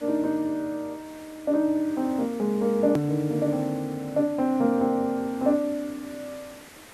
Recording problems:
background hiss; SNR 22 dB
hard cut with a click; at 3 s

